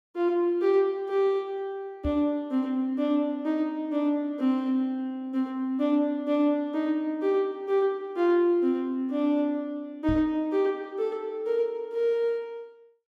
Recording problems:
microphone bump; at 2 s and at 10 s; peak -3 dB vs average level

